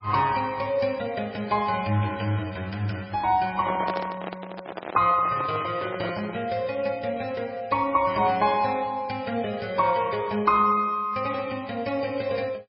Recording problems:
lossy codec; MP3, log-spectral distance 4 dB, nothing above 5.2 kHz
handling noise; from 3.5 to 6.5 s; peak 0 dB vs average level

